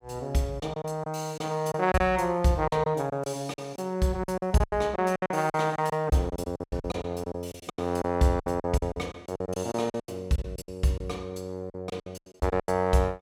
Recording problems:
lost packets; 16% of the sound replaced, filled with silence

